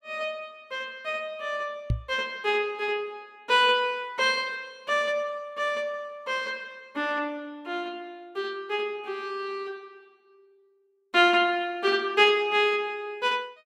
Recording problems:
microphone thump; at 2 s; peak +4 dB vs average level

